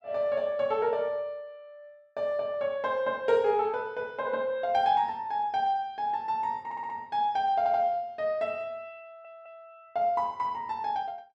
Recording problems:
stutter; at 6.5 s, at 7.5 s and at 9 s

